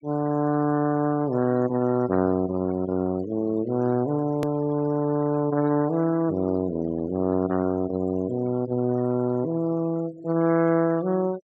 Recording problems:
treble cut off; nothing above 8 kHz
noise reduction artefacts; signal-to-artefact ratio 20 dB
hard cut with a click; at 4.5 s

